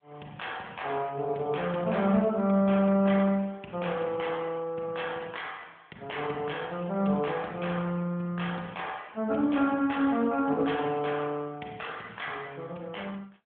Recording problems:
phone line; 170 Hz to 3.4 kHz, AMR-NB

